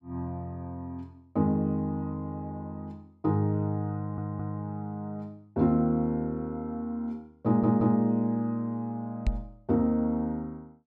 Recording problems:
stutter; at 4 s and at 7.5 s
microphone thump; at 9.5 s; peak +4 dB vs average level

